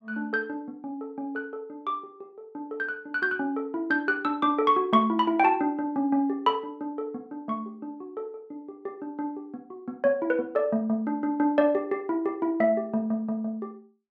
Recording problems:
none

